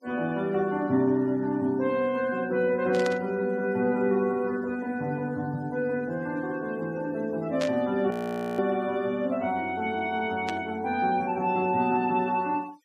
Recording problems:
noise reduction artefacts; signal-to-artefact ratio 26 dB
burst of static; at 3 s, at 7.5 s and at 10 s; peak -4 dB vs average level
audio freezing; at 8 s

